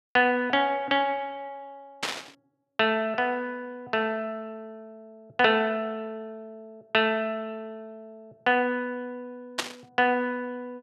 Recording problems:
static burst; at 2 s and at 9.5 s; peak +4 dB vs average level

